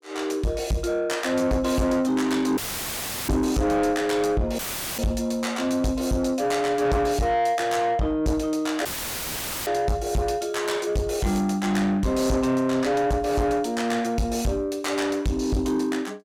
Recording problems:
distortion; soft clipping, signal-to-distortion ratio 8 dB
dropout; at 2.5 s for 0.5 s, at 4.5 s and at 9 s for 1 s; filled with static

